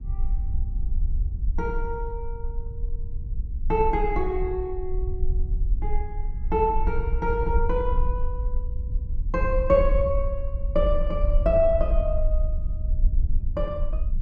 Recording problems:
rumble; below 56 Hz, SNR 2 dB

